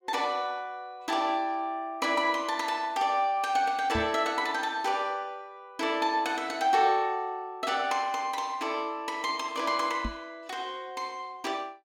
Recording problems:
microphone bump; at 4 s and at 10 s; peak -1 dB vs average level

